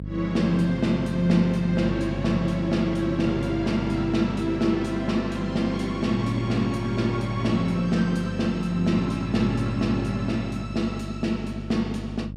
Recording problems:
hum; 50 Hz, harmonics up to 550 Hz, SNR 10 dB

